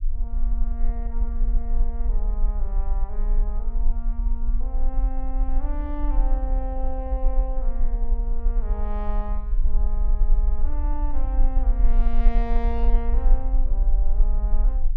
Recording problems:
low-frequency rumble; below 40 Hz, SNR -11 dB

